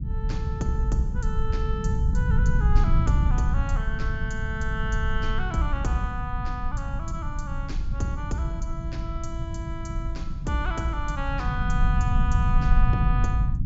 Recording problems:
treble cut off; nothing above 8 kHz
low-frequency rumble; below 94 Hz, SNR -5 dB

